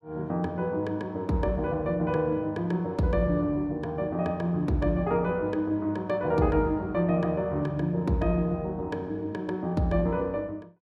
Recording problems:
none

